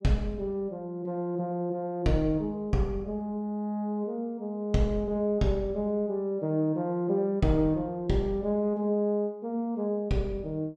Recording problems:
none

